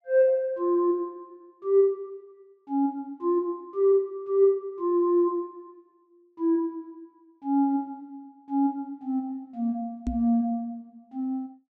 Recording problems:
microphone bump; at 10 s; peak 0 dB vs average level

